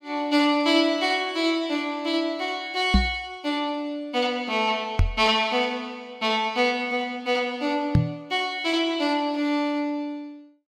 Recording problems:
microphone thump; at 3 s, at 5 s and at 8 s; peak +8 dB vs average level

